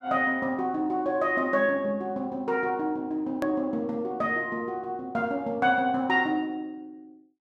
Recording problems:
click at an edit; at 3.5 s

